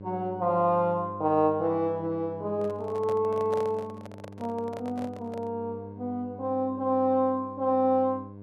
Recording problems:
hum; 50 Hz, harmonics up to 1 kHz, SNR 16 dB
handling noise; from 2.5 to 5.5 s; peak -7 dB vs average level

